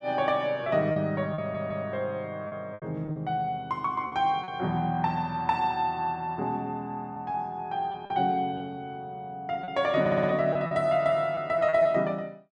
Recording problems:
packet loss; 6% of the sound replaced, filled with repeated pitch periods
stutter; at 1.5 s and at 10 s

